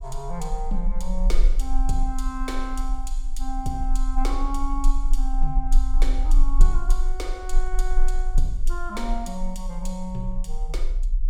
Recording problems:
low-frequency rumble; below 34 Hz, strongest tone 20 Hz, SNR -6 dB

